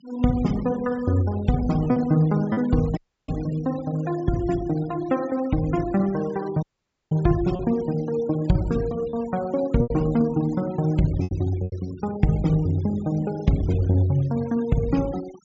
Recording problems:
treble missing; nothing above 8 kHz
denoising artefacts; signal-to-artefact ratio 22 dB
lost packets; 3% of the sound replaced, filled with repeated pitch periods
dropout; at 3 s and at 6.5 s

